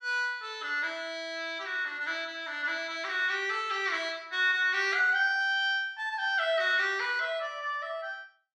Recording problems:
none

